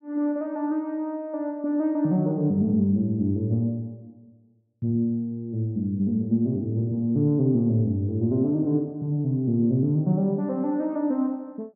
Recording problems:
none

